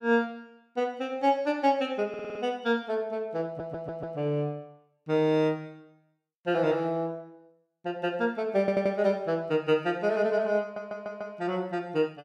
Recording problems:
audio stuttering; 4 times, first at 2 s

